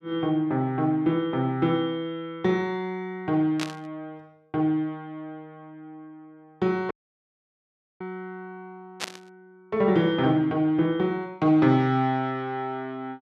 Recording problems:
burst of static; at 3.5 s and at 9 s; peak 0 dB vs average level
audio cutting out; at 7 s for 1 s

